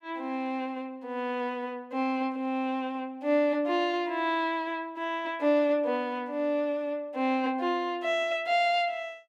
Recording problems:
none

